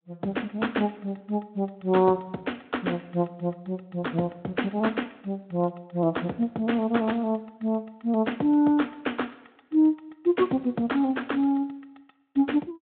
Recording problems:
phone line; 170 Hz to 3.6 kHz, Speex

